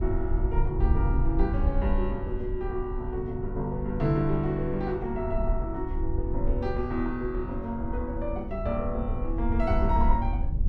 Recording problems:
low-frequency rumble; below 66 Hz, SNR 1 dB

